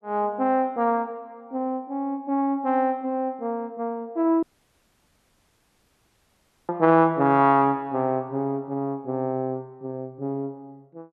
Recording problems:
audio cutting out; at 4.5 s for 2.5 s

